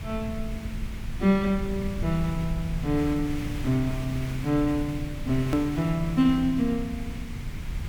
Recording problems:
hiss; SNR 14 dB
rumble; below 100 Hz, SNR 10 dB
click at an edit; at 5.5 s

